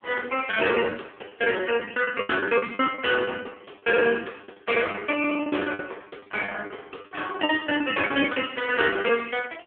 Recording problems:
phone line; 280 Hz to 3.4 kHz, AMR-NB
packet loss; 18% of the sound replaced, filled with the last packet

